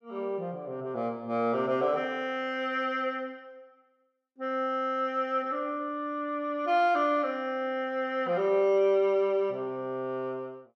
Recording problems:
none

